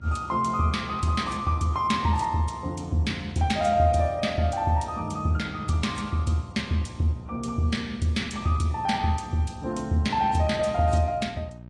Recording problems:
lossy codec; AAC, log-spectral distance 2 dB, nothing above 10.1 kHz
hum; 60 Hz, harmonics up to 660 Hz, SNR 20 dB

